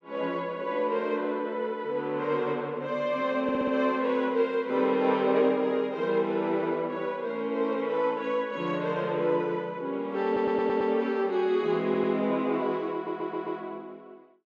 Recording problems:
audio stuttering; 4 times, first at 3.5 s

